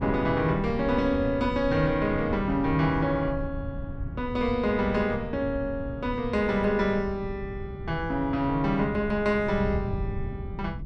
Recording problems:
wind on the microphone; below 130 Hz, SNR 10 dB

